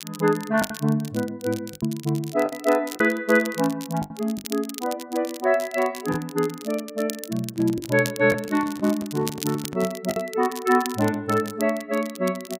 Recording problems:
crackle; vinyl, SNR 14 dB
packet loss; 4% of the sound replaced, filled with the last packet
microphone handling noise; from 7.5 to 10 s; peak -8 dB vs average level

